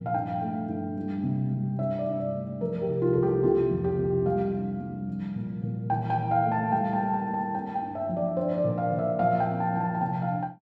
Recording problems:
none

